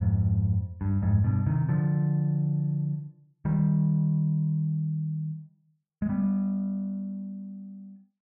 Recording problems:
none

